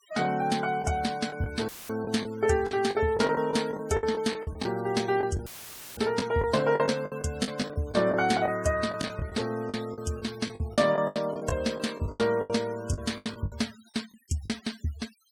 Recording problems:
noise reduction artefacts; signal-to-artefact ratio 18 dB
packet loss; 13% of the sound replaced, filled with the last packet
dropout; at 1.5 s and at 5.5 s for 0.5 s; filled with static

